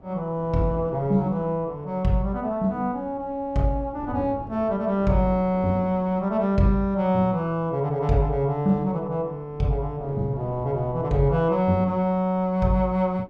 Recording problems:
wind on the microphone; below 370 Hz, SNR 20 dB

